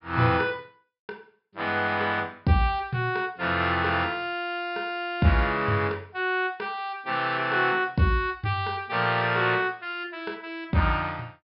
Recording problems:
low-pass filter; nothing above 5.2 kHz

